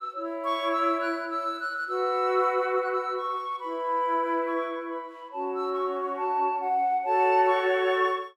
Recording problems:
none

